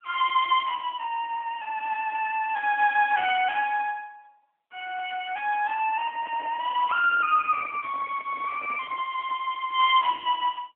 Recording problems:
phone line; 430 Hz to 3.3 kHz, AMR-NB
handling noise; from 6 to 9.5 s; peak -13 dB vs average level

